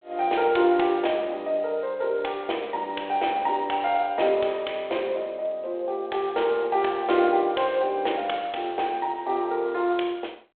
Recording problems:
phone line; 300 Hz to 3.5 kHz, G.726

